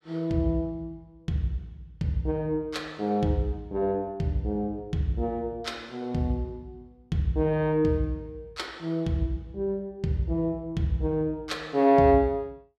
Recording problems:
none

